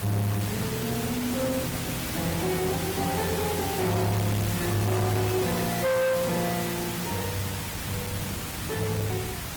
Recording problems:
lossy compression; Opus, log-spectral distance 8 dB, nothing above 19.5 kHz
distortion; hard clipping, uneven, signal-to-distortion ratio 7 dB
background hiss; slope -2 dB per octave, SNR 4 dB
wind on the microphone; below 220 Hz, SNR 13 dB

